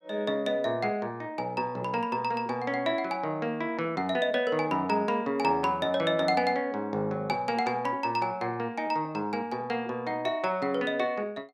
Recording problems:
none

